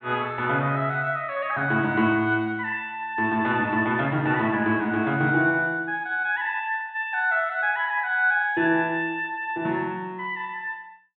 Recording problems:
treble missing; nothing above 4 kHz

